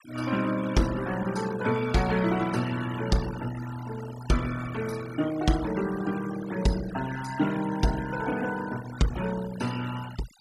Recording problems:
noise reduction artefacts; signal-to-artefact ratio 13 dB

